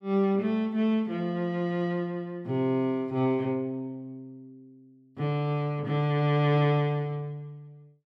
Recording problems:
none

